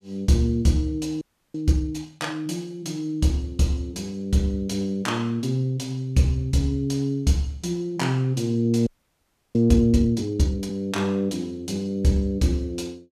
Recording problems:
audio freezing; at 1 s and at 9 s for 0.5 s

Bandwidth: 14.5 kHz